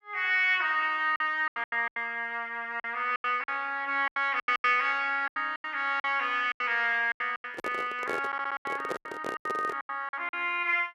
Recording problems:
lost packets; 15% of the sound replaced, filled with silence
microphone handling noise; from 7.5 to 10 s; peak -1 dB vs average level
audio stuttering; at 8.5 s

